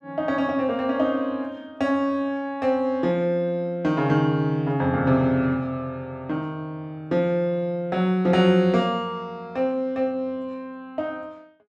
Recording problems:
none

